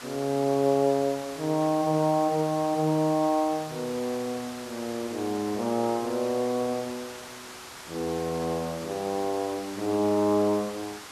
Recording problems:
hiss; SNR 14 dB

